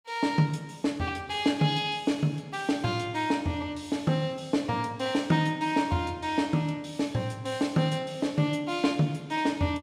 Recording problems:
none

